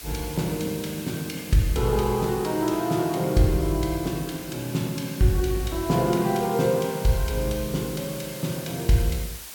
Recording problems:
background hiss; slope +1 dB per octave, SNR 13 dB

